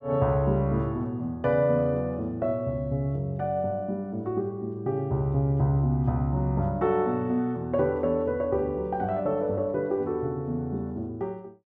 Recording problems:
none

